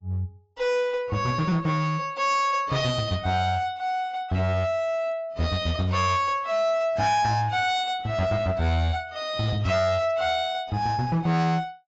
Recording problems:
codec artefacts; AAC, log-spectral distance 2 dB, nothing above 7.3 kHz
distortion; hard clipping, uneven, signal-to-distortion ratio 10 dB

